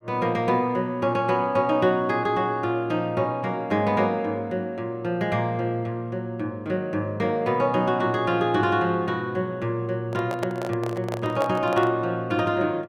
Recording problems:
microphone handling noise; from 10 to 12 s; peak -1 dB vs average level

